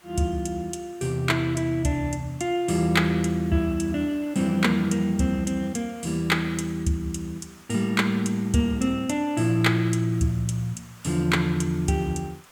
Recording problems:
hiss; SNR 25 dB

